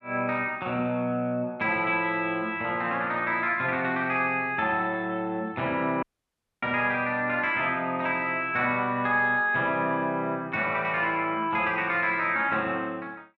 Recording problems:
dropout; at 6 s for 0.5 s

